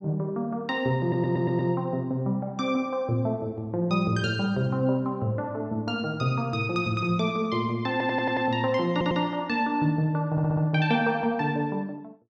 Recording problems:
audio stuttering; 4 times, first at 1 s

